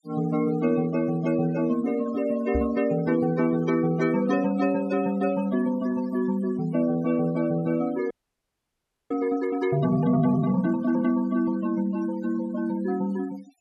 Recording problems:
noise reduction artefacts; signal-to-artefact ratio 17 dB
knock on the microphone; at 2.5 s; peak +2 dB vs average level
audio freezing; at 8 s for 1 s

